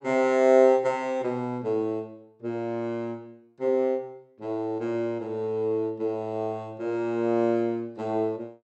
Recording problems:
none

